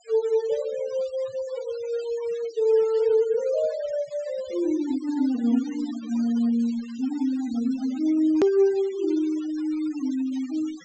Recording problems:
treble cut off; nothing above 8 kHz
noise reduction artefacts; signal-to-artefact ratio 21 dB
hard cut with a click; at 8.5 s

